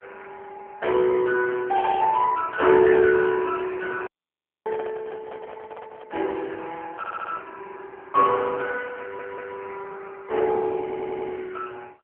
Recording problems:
phone line; 300 Hz to 2.6 kHz, AMR-NB
handling noise; from 3.5 to 6.5 s; peak -8 dB vs average level
dropout; at 4 s for 0.5 s
audio stuttering; at 7 s, at 9 s and at 11 s

